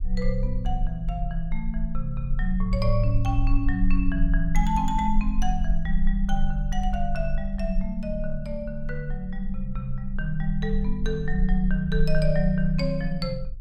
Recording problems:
low-frequency rumble; below 38 Hz, strongest tone 18 Hz, SNR 3 dB

